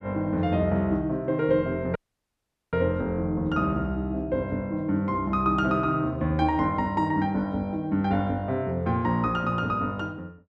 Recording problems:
audio cutting out; at 2 s for 1 s

